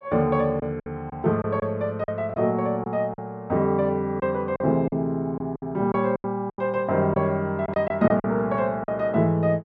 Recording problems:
packet loss; 8% of the sound replaced, filled with silence

